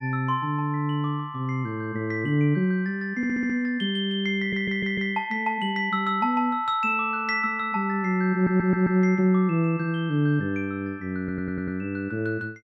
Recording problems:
audio stuttering; 4 times, first at 3 s

